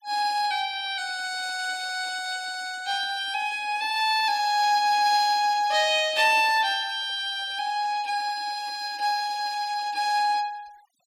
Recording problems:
noise reduction artefacts; signal-to-artefact ratio 23 dB

